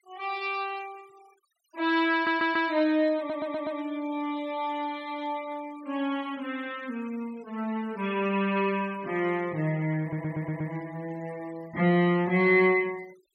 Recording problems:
noise reduction artefacts; signal-to-artefact ratio 24 dB
stutter; at 2 s, at 3 s and at 10 s

